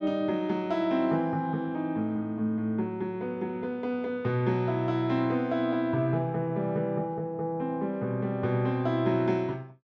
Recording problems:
none

